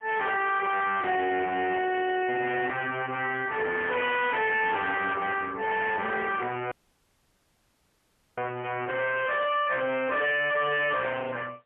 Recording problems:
telephone audio; 280 Hz to 3.4 kHz, AMR-NB, then MP3
distorted audio; soft clipping, signal-to-distortion ratio 6 dB
audio cutting out; at 6.5 s for 1.5 s

